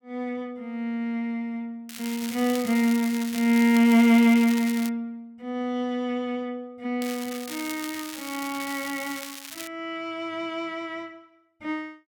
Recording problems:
crackling; from 2 to 5 s and from 7 to 9.5 s; loose cable, SNR 12 dB

